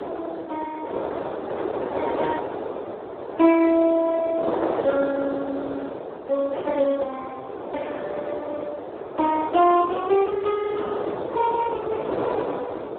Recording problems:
phone line; 280 Hz to 2.8 kHz, Speex
wind noise; below 770 Hz, SNR 6 dB

